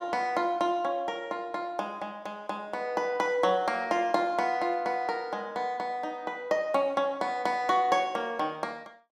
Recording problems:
none

